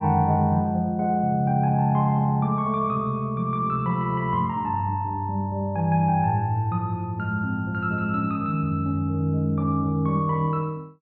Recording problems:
none

